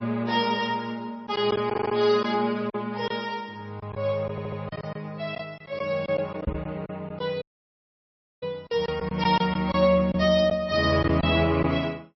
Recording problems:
lossy codec; MP3, log-spectral distance 2 dB, nothing above 5.2 kHz
lost packets; 6% of the sound replaced, filled with silence
stutter; at 1.5 s and at 4.5 s
microphone bump; at 6.5 s; peak +1 dB vs average level
dropout; at 7.5 s for 1 s

